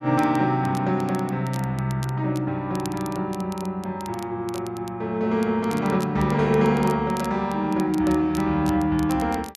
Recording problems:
crackling; vinyl, SNR 20 dB

